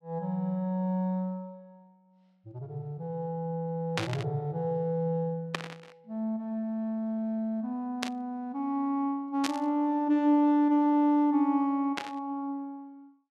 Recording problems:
static burst; 5 times, first at 4 s; peak +2 dB vs average level

